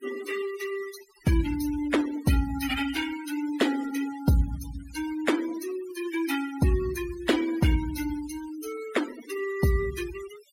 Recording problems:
noise reduction artefacts; signal-to-artefact ratio 13 dB

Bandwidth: 16 kHz